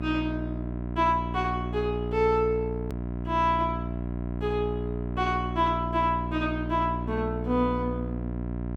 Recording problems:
electrical hum; 60 Hz, harmonics up to 1 kHz, SNR 5 dB
hard cut with a click; at 3 s

